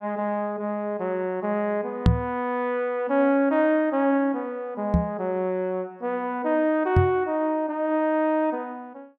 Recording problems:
microphone thump; at 2 s, at 5 s and at 7 s; peak +9 dB vs average level

